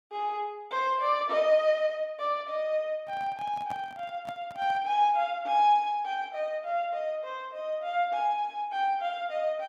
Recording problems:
microphone handling noise; from 3 to 5 s; peak -10 dB vs average level

